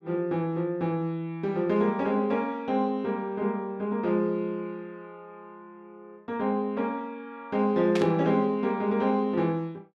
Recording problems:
burst of static; at 8 s; peak -2 dB vs average level

